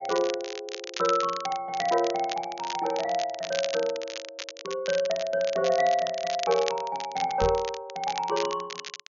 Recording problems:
treble missing; nothing above 6.9 kHz
crackling; vinyl, SNR 10 dB
knock on the microphone; at 7.5 s; peak -1 dB vs average level

